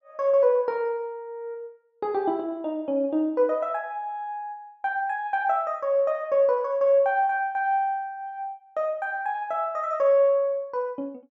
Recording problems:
none

